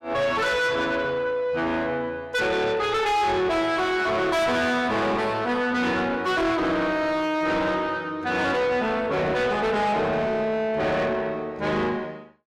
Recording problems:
distortion; soft clipping, signal-to-distortion ratio 6 dB

